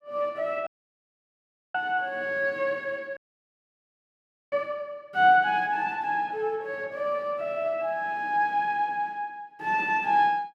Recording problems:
audio cutting out; at 0.5 s for 1 s and at 3 s for 1.5 s

